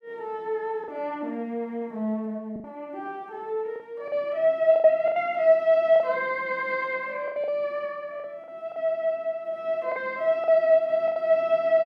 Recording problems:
lost packets; 7% of the sound replaced, filled with the last packet

